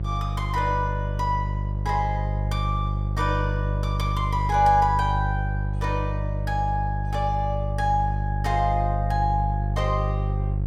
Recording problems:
hum; 50 Hz, harmonics up to 350 Hz, SNR 0 dB

